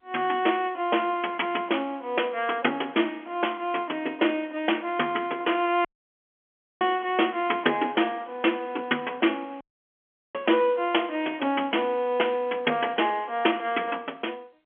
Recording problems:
phone line; 240 Hz to 3.4 kHz, G.711
audio cutting out; at 6 s for 1 s and at 9.5 s for 0.5 s

